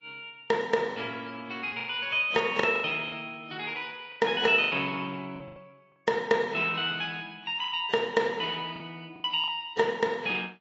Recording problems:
low-pass filter; nothing above 7.3 kHz
codec artefacts; AAC, then AAC, log-spectral distance 3 dB
packet loss; 8% of the sound replaced, filled with the last packet

